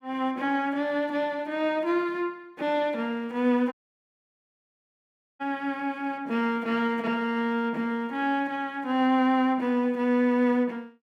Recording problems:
dropout; at 3.5 s for 1.5 s

